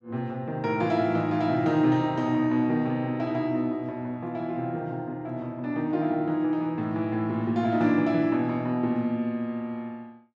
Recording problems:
none

